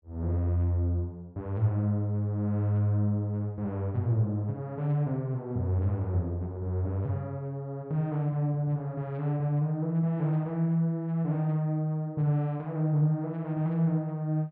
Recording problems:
none

